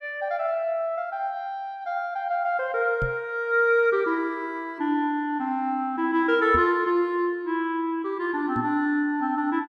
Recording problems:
microphone thump; at 3 s, at 6.5 s and at 8.5 s; peak -1 dB vs average level

